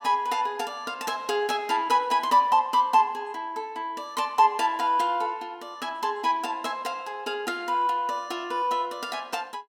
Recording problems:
none

